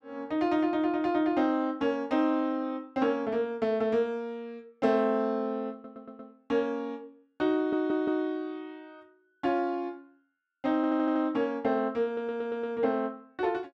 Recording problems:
audio stuttering; 4 times, first at 5.5 s

